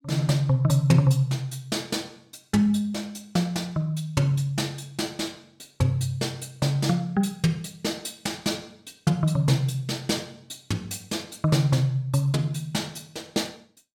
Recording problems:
none

